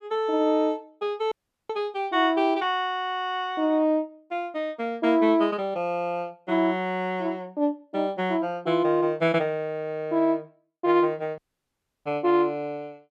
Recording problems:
dropout; at 1.5 s and at 11 s for 0.5 s

